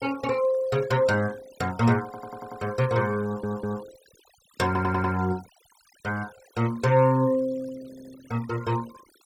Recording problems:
denoising artefacts; signal-to-artefact ratio 21 dB
stutter; 4 times, first at 2 s

